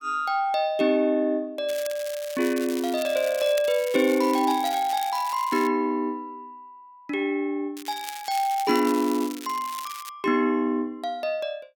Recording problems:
crackling; from 1.5 to 5.5 s and from 8 to 10 s; loose cable, SNR 14 dB

